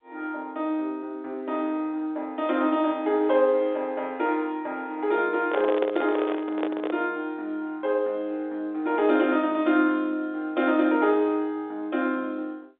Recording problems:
phone line; 220 Hz to 3.7 kHz, G.711
handling noise; from 5.5 to 7 s; peak +1 dB vs average level

